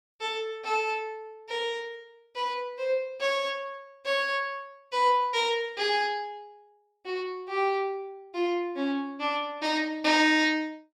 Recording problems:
none

